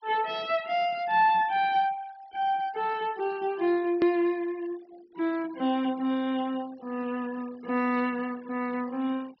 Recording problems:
low-pass filter; nothing above 5.5 kHz
noise reduction artefacts; signal-to-artefact ratio 23 dB
edit click; at 4 s

